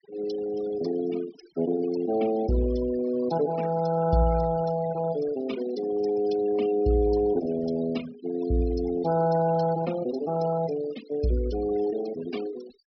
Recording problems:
treble missing; nothing above 5.5 kHz
denoising artefacts; signal-to-artefact ratio 15 dB

